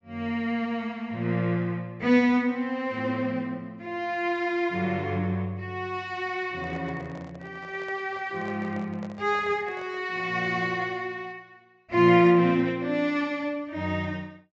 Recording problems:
treble cut off; nothing above 8 kHz
microphone handling noise; from 6.5 to 10 s; peak -12 dB vs average level

